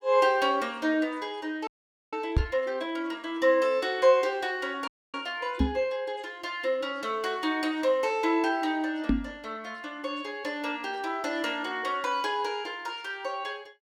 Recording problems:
frozen audio; at 1.5 s and at 5 s
microphone bump; at 2.5 s, at 5.5 s and at 9 s; peak +7 dB vs average level

